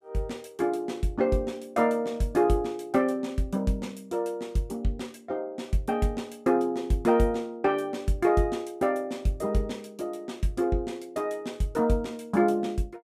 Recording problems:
none

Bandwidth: 15.5 kHz